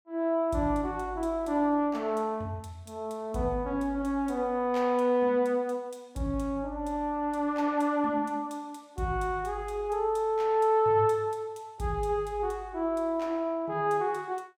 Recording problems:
none

